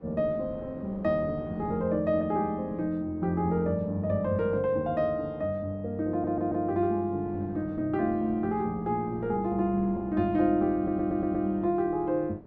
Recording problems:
wind noise; below 460 Hz, SNR 20 dB
stutter; at 6 s and at 11 s

